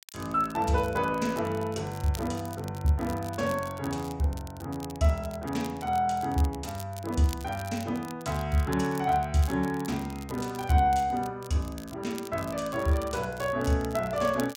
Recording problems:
crackling; vinyl, SNR 18 dB

